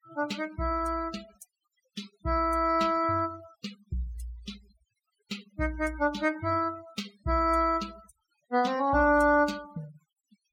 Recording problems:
denoising artefacts; signal-to-artefact ratio 20 dB

